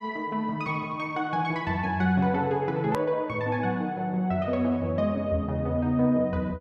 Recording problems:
hard cut with a click; at 3 s

